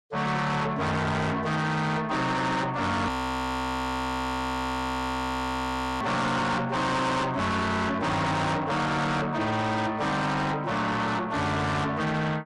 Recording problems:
codec artefacts; MP3, log-spectral distance 2 dB, nothing above 13.1 kHz
distorted audio; soft clipping, signal-to-distortion ratio 6 dB
frozen audio; at 3 s for 3 s

